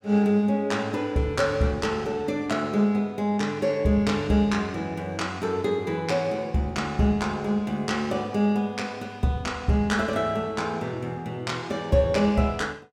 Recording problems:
none

